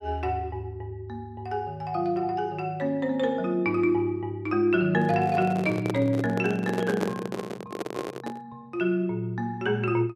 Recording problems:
handling noise; from 5 to 8.5 s; peak +2 dB vs average level

